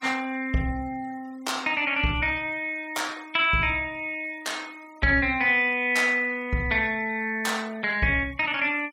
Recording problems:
denoising artefacts; signal-to-artefact ratio 25 dB

